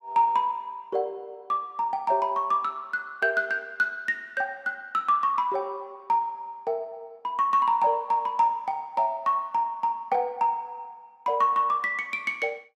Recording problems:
none

